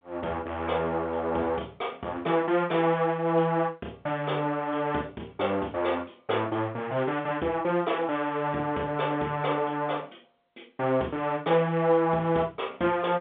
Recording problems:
telephone audio; 240 Hz to 3.7 kHz, G.711

